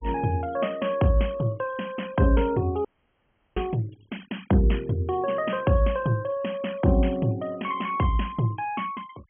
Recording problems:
treble cut off; nothing above 3.2 kHz
denoising artefacts; signal-to-artefact ratio 24 dB
audio cutting out; at 3 s for 0.5 s

